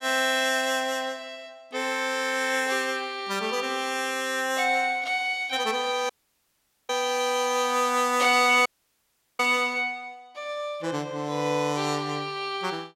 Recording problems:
audio cutting out; at 6 s for 1 s and at 8.5 s for 0.5 s

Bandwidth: 16.5 kHz